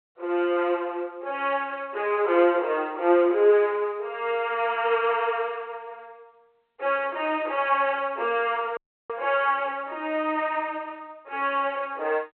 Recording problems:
phone line; 320 Hz to 3.1 kHz, G.726
dropout; at 9 s

